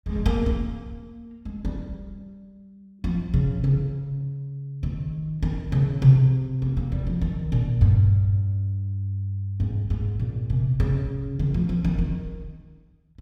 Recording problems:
none

